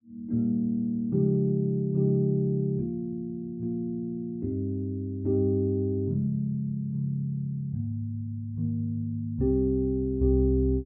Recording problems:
none

